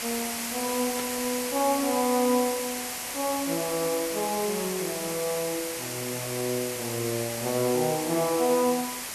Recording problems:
background hiss; slope 0 dB per octave, SNR 3 dB
burst of static; at 1 s; peak -5 dB vs average level

